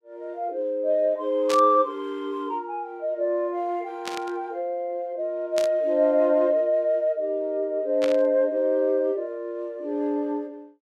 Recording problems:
burst of static; 4 times, first at 1.5 s; peak -2 dB vs average level

